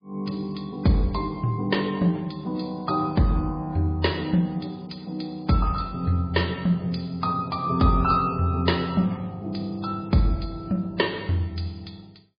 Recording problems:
codec artefacts; MP3, log-spectral distance 4 dB

